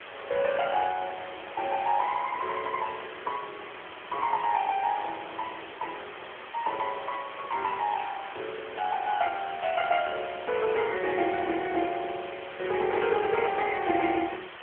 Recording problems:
telephone audio; 280 Hz to 3.3 kHz, AMR-NB
hiss; SNR 12 dB

